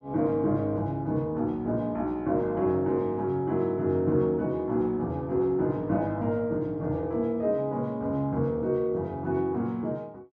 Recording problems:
none

